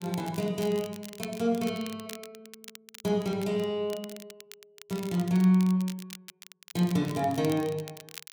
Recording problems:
crackling; vinyl, SNR 17 dB

